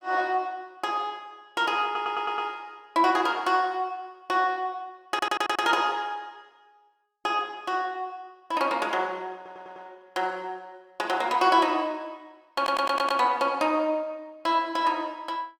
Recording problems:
audio stuttering; 4 times, first at 2 s

